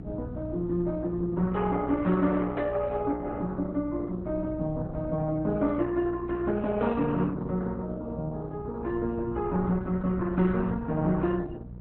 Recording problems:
lossy codec; AAC, then Opus, log-spectral distance 3 dB, nothing above 3.9 kHz
hum; 60 Hz, harmonics up to 480 Hz, SNR 14 dB
wind noise; below 210 Hz, SNR 16 dB

